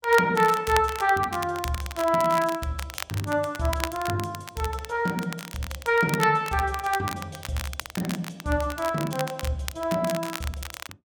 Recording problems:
crackle; vinyl, SNR 11 dB

